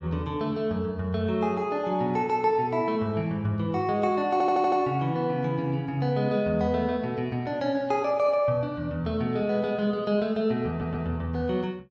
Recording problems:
audio stuttering; at 4.5 s and at 11 s

